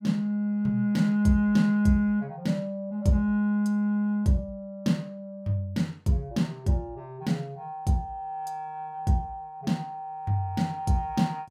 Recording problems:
none

